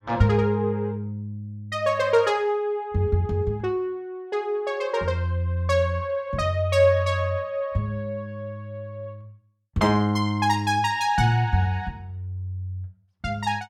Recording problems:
none

